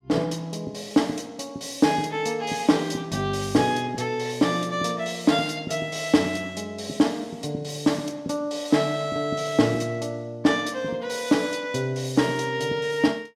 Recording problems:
none

